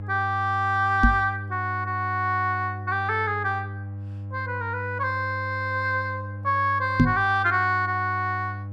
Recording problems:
electrical hum; 50 Hz, harmonics up to 600 Hz, SNR 10 dB
microphone bump; at 1 s and at 7 s; peak +10 dB vs average level

